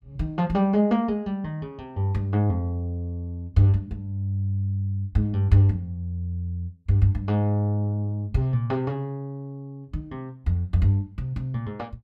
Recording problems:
none

